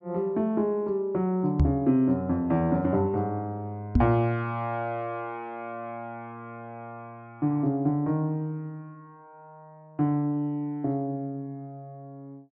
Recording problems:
treble missing; nothing above 8 kHz
microphone bump; at 1.5 s and at 4 s; peak +8 dB vs average level

